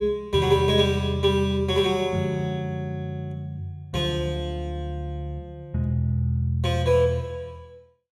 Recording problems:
none

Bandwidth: 14.5 kHz